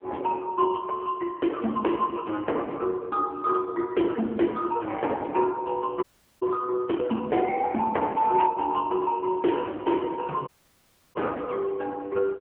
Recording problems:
telephone audio; 260 Hz to 3.1 kHz, AMR-NB
distorted audio; hard clipping, signal-to-distortion ratio 11 dB
dropout; at 6 s and at 10 s for 0.5 s

